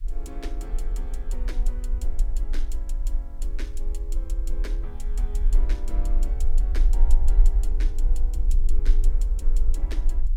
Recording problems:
background hiss; slope +2 dB per octave, SNR 26 dB
low-frequency rumble; below 38 Hz, strongest tone 18 Hz, SNR -16 dB

